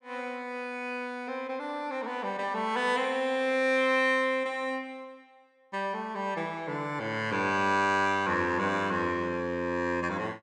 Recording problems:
none

